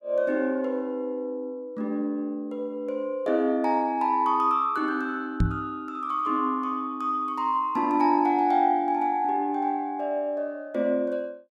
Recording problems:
microphone thump; at 5.5 s; peak +6 dB vs average level

